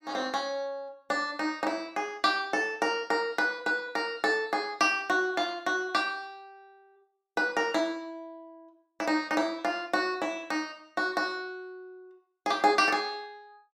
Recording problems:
none

